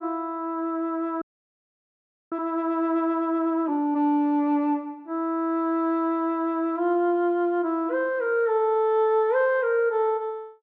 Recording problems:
audio freezing; at 1 s for 1 s

